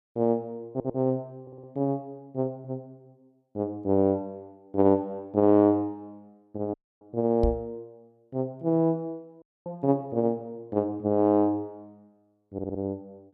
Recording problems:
audio stuttering; at 0.5 s, at 1.5 s and at 13 s
audio cutting out; at 6.5 s and at 9.5 s
microphone bump; at 7.5 s; peak +3 dB vs average level

